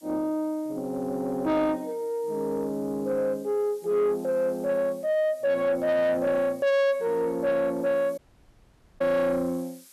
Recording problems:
distorted audio; soft clipping, signal-to-distortion ratio 12 dB
background hiss; SNR 27 dB
dropout; at 8 s for 1 s

